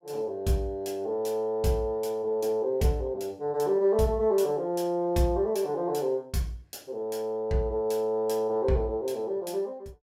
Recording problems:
none

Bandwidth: 16 kHz